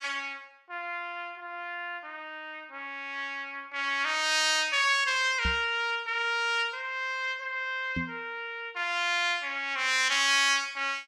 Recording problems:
knock on the microphone; at 5.5 s and at 8 s; peak -2 dB vs average level

